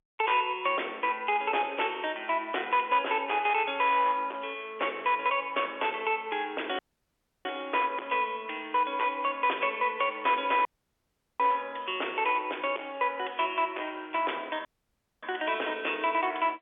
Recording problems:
phone line; 320 Hz to 3.5 kHz, G.711
distortion; hard clipping, uneven, signal-to-distortion ratio 12 dB
audio cutting out; at 7 s for 0.5 s, at 11 s for 1 s and at 15 s for 0.5 s

